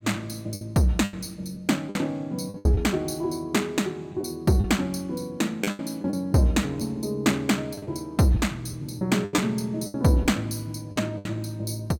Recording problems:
packet loss; 8% of the sound replaced, filled with the last packet

